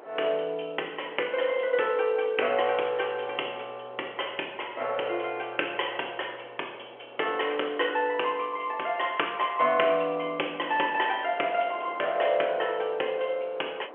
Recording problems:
phone line; 340 Hz to 3.2 kHz, G.711
wind on the microphone; below 970 Hz, SNR 19 dB

